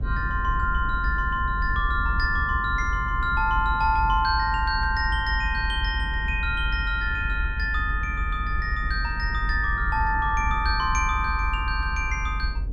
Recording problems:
rumble; below 68 Hz, strongest tone 46 Hz, SNR 4 dB

